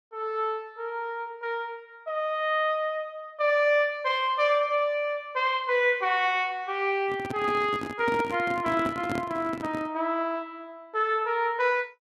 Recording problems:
microphone handling noise; from 7 to 10 s; peak -1 dB vs average level

